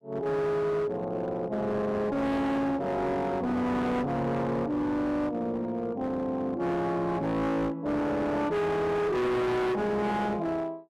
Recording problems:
distortion; hard clipping, uneven, signal-to-distortion ratio 7 dB

